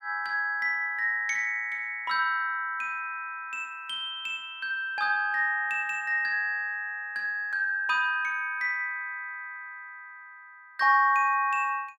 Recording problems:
none

